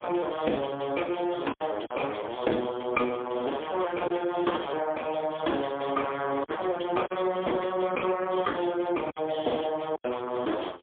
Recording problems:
telephone audio; 280 Hz to 3.4 kHz, AMR-NB, then MP3
lost packets; 3% of the sound replaced, filled with silence

